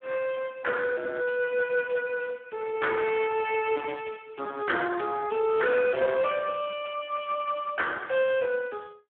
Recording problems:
phone line; 220 Hz to 3.4 kHz, Speex
distortion; hard clipping, signal-to-distortion ratio 11 dB

